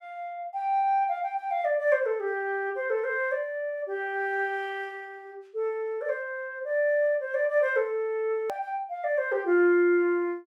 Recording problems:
click at an edit; at 8.5 s

